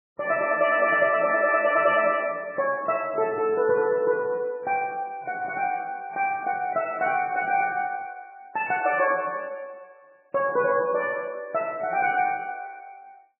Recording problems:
codec artefacts; MP3, log-spectral distance 2 dB, nothing above 2.4 kHz

